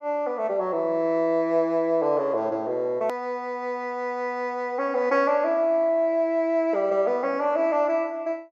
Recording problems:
low-pass filter; nothing above 7.5 kHz
hard cut with a click; at 3 s

